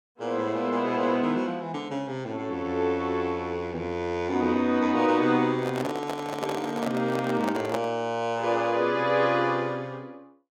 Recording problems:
handling noise; from 5.5 to 8 s; peak -1 dB vs average level

